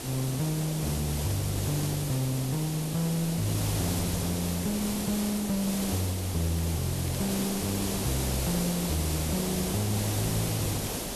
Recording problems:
distorted audio; soft clipping, signal-to-distortion ratio 11 dB
hiss; SNR 2 dB
crackle; vinyl, SNR 29 dB

